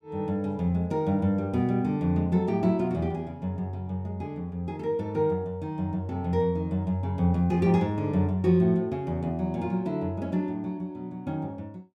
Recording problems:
none

